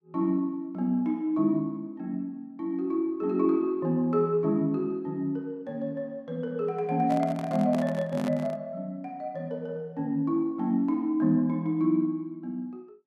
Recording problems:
microphone handling noise; from 7 to 8.5 s; peak -5 dB vs average level

